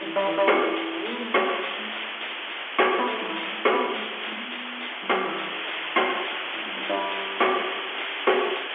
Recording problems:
telephone audio; 280 Hz to 3.4 kHz, G.711
distorted audio; hard clipping, uneven, signal-to-distortion ratio 9 dB
background hiss; SNR 5 dB

